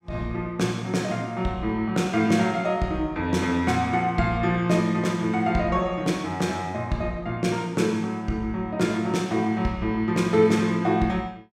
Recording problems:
none

